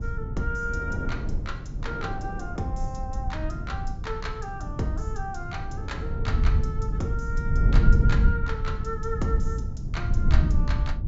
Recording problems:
low-pass filter; nothing above 8 kHz
low-frequency rumble; below 96 Hz, SNR -6 dB
wind on the microphone; below 310 Hz, SNR 8 dB

